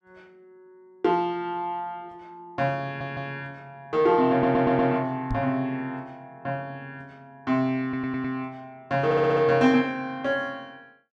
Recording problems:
audio stuttering; 4 times, first at 3 s
microphone thump; at 5.5 s; peak -1 dB vs average level

